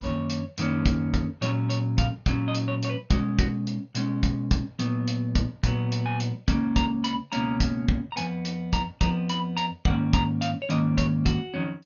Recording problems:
lossy compression; MP2, log-spectral distance 2 dB, nothing above 6.7 kHz

